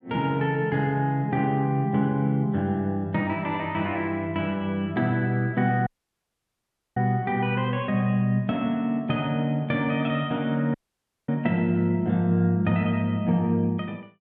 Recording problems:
audio cutting out; at 6 s for 1 s and at 11 s for 0.5 s

